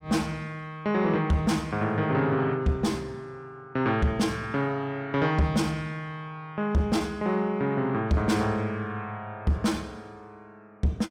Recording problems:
distorted audio; soft clipping, signal-to-distortion ratio 12 dB

